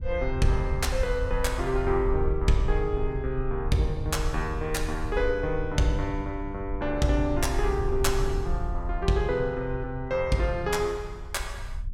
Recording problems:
wind on the microphone; below 62 Hz, SNR 5 dB

